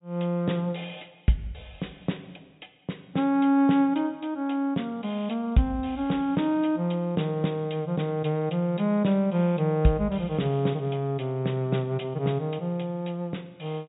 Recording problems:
low-pass filter; nothing above 4 kHz

